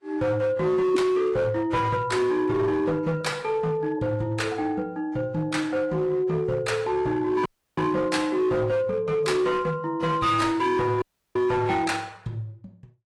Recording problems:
lossy codec; AAC, log-spectral distance 2 dB
distorted audio; hard clipping, signal-to-distortion ratio 12 dB
dropout; at 7.5 s and at 11 s

